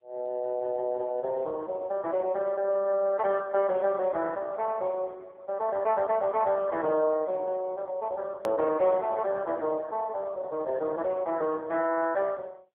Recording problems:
telephone audio; 220 Hz to 3.3 kHz, AMR-NB
click at an edit; at 8.5 s

